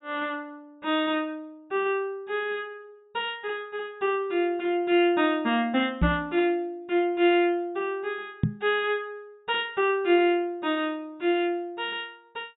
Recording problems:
treble missing; nothing above 4 kHz
microphone bump; at 6 s and at 8.5 s; peak +6 dB vs average level

